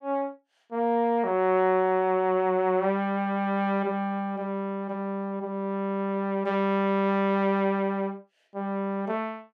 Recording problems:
none

